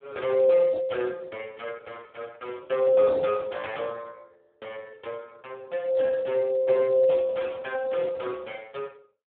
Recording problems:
phone line; 260 Hz to 4 kHz, Speex

